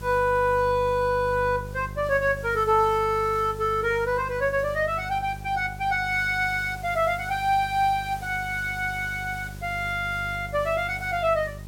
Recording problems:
hum; 50 Hz, harmonics up to 750 Hz, SNR 14 dB
background hiss; slope -2 dB per octave, SNR 23 dB

